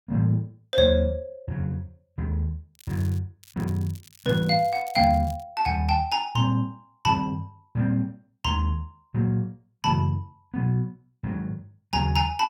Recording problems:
crackle; at 3 s and from 3.5 to 5.5 s; loose cable, SNR 23 dB

